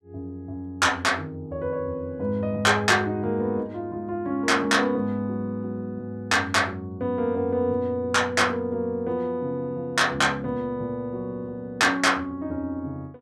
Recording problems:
none

